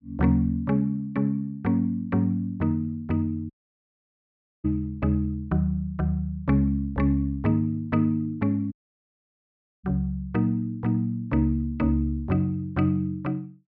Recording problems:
dropout; at 3.5 s for 1 s and at 8.5 s for 1 s

